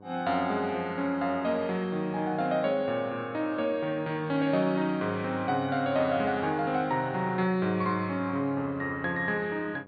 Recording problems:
treble cut off; nothing above 4.6 kHz
hum; 50 Hz, harmonics up to 1.2 kHz, SNR 25 dB

